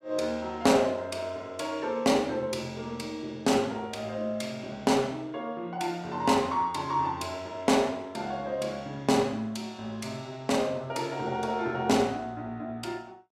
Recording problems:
none

